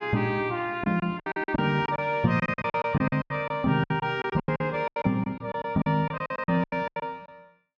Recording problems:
lost packets; 18% of the sound replaced, filled with silence

